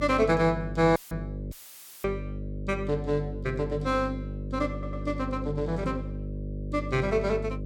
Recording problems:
hum; 50 Hz, harmonics up to 600 Hz, SNR 7 dB
audio cutting out; at 1 s and at 1.5 s for 0.5 s; filled with static
stutter; at 4.5 s

